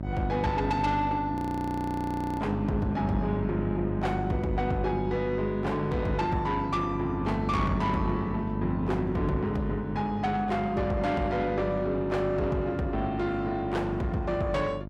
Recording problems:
distorted audio; soft clipping, signal-to-distortion ratio 10 dB
hum; 50 Hz, harmonics up to 950 Hz, SNR 6 dB
frozen audio; at 1.5 s for 1 s

